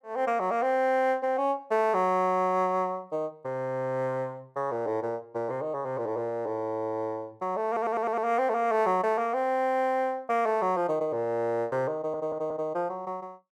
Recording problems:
stutter; at 7.5 s and at 12 s

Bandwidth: 14 kHz